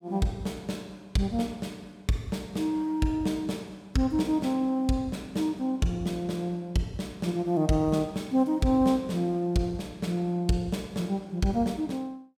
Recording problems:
none

